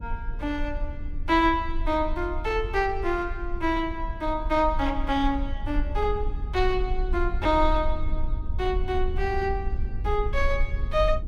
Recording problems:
low-frequency rumble; below 54 Hz, strongest tone 20 Hz, SNR 5 dB

